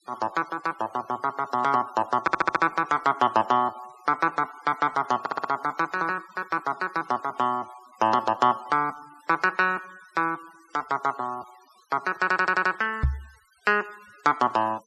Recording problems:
noise reduction artefacts; signal-to-artefact ratio 25 dB
audio stuttering; at 2 s, at 5 s and at 12 s
knock on the microphone; at 13 s; peak +5 dB vs average level

